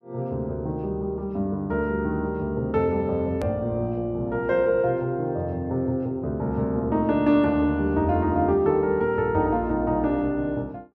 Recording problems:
edit click; at 3.5 s

